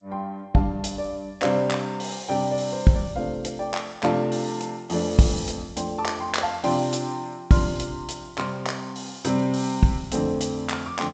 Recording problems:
lossy compression; G.722, log-spectral distance 4 dB, nothing above 7.6 kHz

